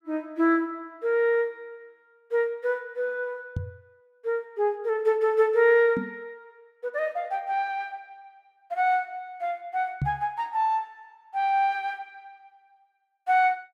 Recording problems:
knock on the microphone; at 3.5 s, at 6 s and at 10 s; peak +2 dB vs average level

